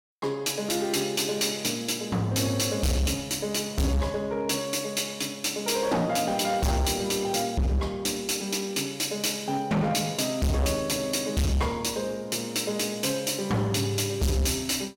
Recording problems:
distorted audio; hard clipping, signal-to-distortion ratio 6 dB

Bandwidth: 17 kHz